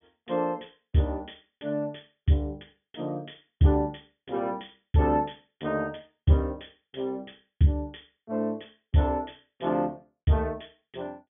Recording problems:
treble missing; nothing above 3.3 kHz

